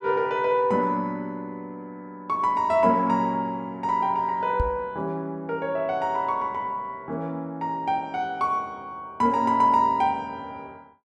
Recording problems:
knock on the microphone; at 4.5 s; peak +1 dB vs average level

